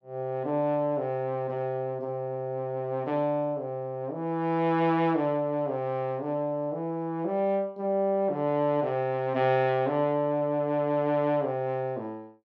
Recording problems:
none

